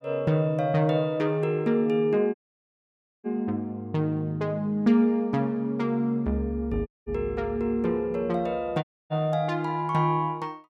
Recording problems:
dropout; at 2.5 s for 1 s, at 7 s and at 9 s

